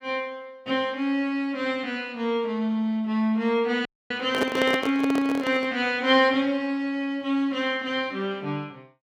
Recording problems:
audio cutting out; at 4 s
microphone handling noise; from 4.5 to 5.5 s; peak +3 dB vs average level

